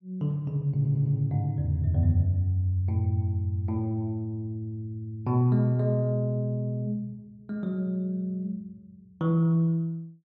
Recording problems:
audio stuttering; at 1 s

